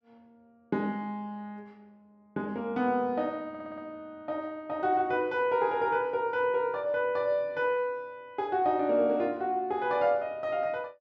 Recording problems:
audio stuttering; at 3.5 s

